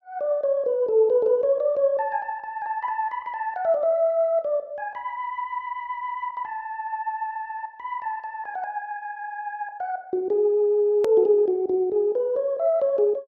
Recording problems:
edit click; at 11 s

